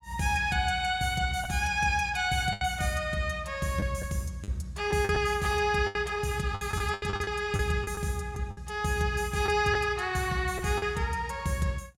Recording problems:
packet loss; 7% of the sound replaced, filled with the last packet

